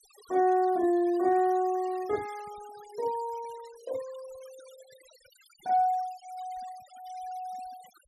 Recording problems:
denoising artefacts; signal-to-artefact ratio 24 dB

